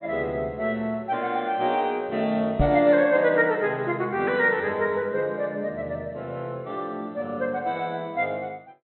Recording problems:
treble cut off; nothing above 4.1 kHz
microphone thump; at 2.5 s; peak +5 dB vs average level

